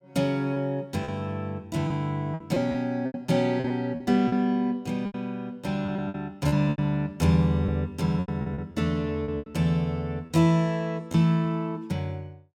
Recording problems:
packet loss; 9% of the sound replaced, filled with repeated pitch periods

